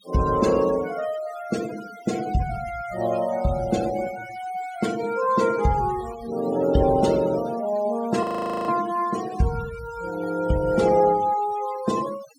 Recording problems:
noise reduction artefacts; signal-to-artefact ratio 16 dB
audio freezing; at 8 s

